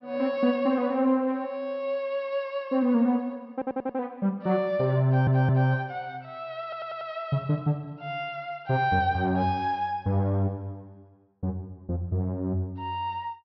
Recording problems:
treble missing; nothing above 5.6 kHz
audio stuttering; at 3.5 s, at 5 s and at 6.5 s

